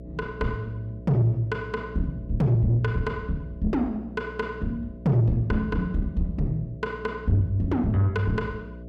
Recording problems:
distortion; soft clipping, signal-to-distortion ratio 11 dB
electrical hum; 60 Hz, harmonics up to 660 Hz, SNR 15 dB

